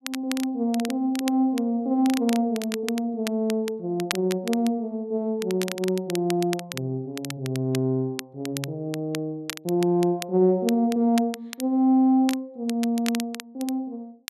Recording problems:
crackle; vinyl, SNR 13 dB

